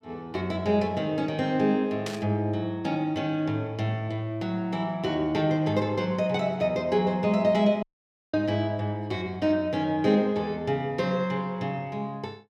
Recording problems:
burst of static; at 2 s; peak -4 dB vs average level
dropout; at 8 s for 0.5 s

